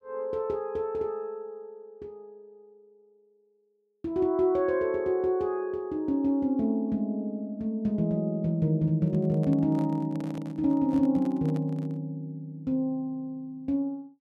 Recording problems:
handling noise; from 9 to 12 s; peak -11 dB vs average level

